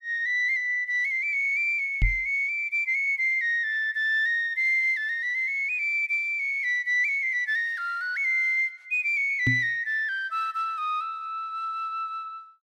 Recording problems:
knock on the microphone; at 2 s and at 9.5 s; peak +3 dB vs average level

